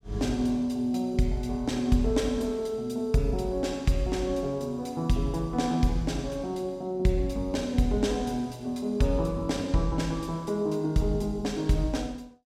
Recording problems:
none

